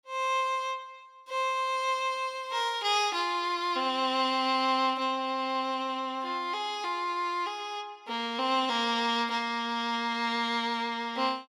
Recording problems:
none

